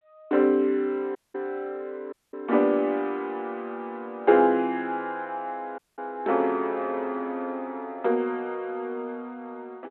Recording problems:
phone line; 220 Hz to 3.6 kHz, G.726
audio cutting out; at 1 s, at 2 s and at 6 s

